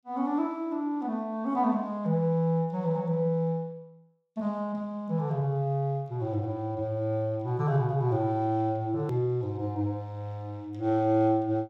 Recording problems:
click at an edit; at 9 s

